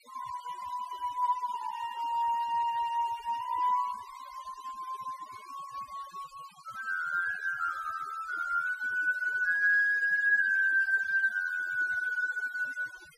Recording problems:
denoising artefacts; signal-to-artefact ratio 23 dB

